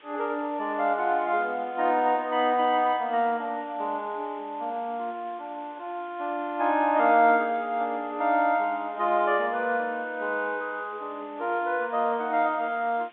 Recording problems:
phone line; 260 Hz to 3.9 kHz, G.711
hiss; SNR 27 dB

